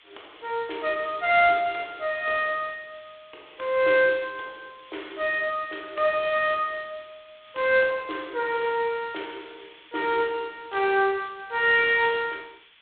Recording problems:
phone line; 280 Hz to 3.7 kHz, G.726
hiss; SNR 27 dB

